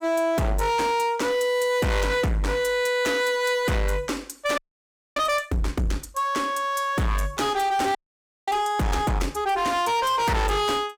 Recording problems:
distortion; hard clipping, signal-to-distortion ratio 6 dB
frozen audio; at 4.5 s for 0.5 s and at 8 s for 0.5 s

